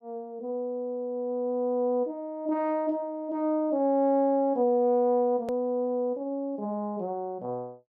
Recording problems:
hard cut with a click; at 5.5 s

